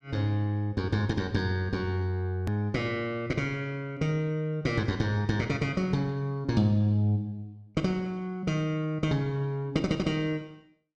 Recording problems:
hard cut with a click; at 2.5 s

